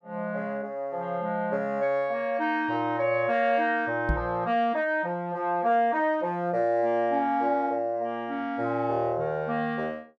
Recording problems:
microphone thump; at 4 s; peak +3 dB vs average level

